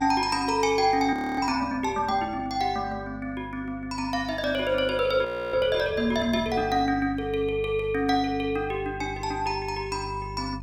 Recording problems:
mains hum; 50 Hz, harmonics up to 400 Hz, SNR 16 dB
audio freezing; at 1 s and at 5.5 s

